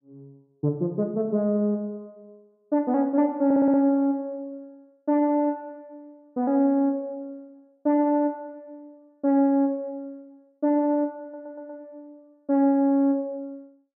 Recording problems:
audio stuttering; at 3.5 s and at 11 s

